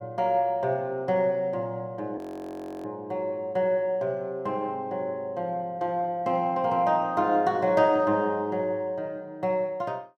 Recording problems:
frozen audio; at 2 s for 0.5 s

